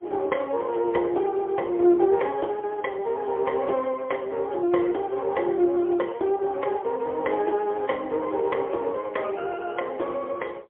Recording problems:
phone line; 280 Hz to 3.3 kHz, AMR-NB, then MP3

